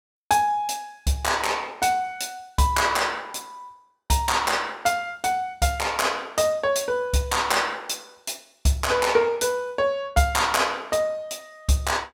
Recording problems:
none

